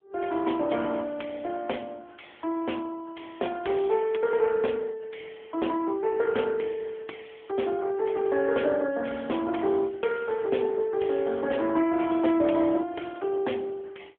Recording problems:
phone line; 260 Hz to 3.4 kHz, AMR-NB

